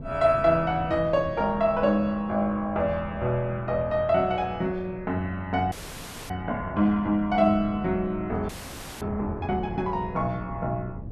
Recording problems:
wind noise; below 230 Hz, SNR 15 dB
frozen audio; at 5.5 s for 0.5 s and at 8.5 s for 0.5 s

